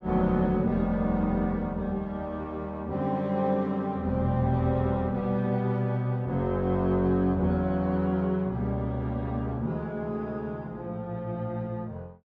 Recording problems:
none

